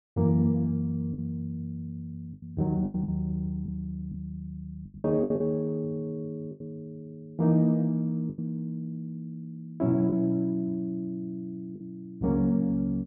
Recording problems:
packet loss; 6% of the sound replaced, filled with the last packet

